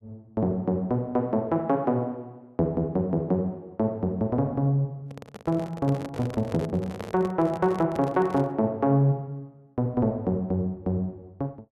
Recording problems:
handling noise; from 5 to 8.5 s; peak -5 dB vs average level

